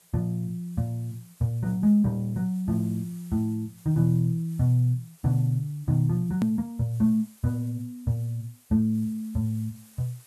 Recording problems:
background hiss; slope 0 dB per octave, SNR 27 dB
hard cut with a click; at 6.5 s

